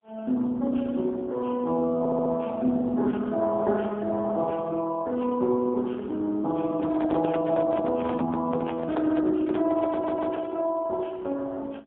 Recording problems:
telephone audio; 220 Hz to 2.5 kHz, AMR-NB, then MP3
audio stuttering; at 2 s and at 10 s
handling noise; from 6.5 to 11 s; peak -5 dB vs average level

